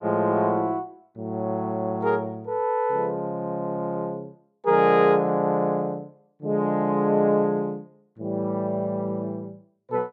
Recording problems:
none

